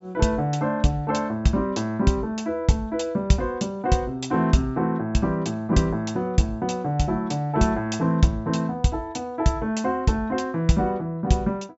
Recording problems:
treble missing; nothing above 8 kHz

